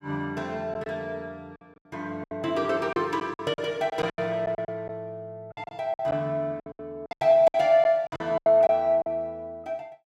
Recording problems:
lost packets; 12% of the sound replaced, filled with silence

